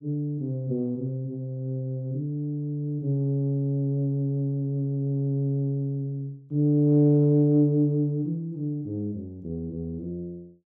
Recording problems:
none

